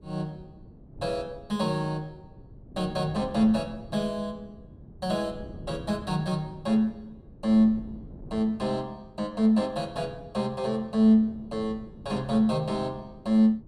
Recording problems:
wind on the microphone; below 250 Hz, SNR 19 dB

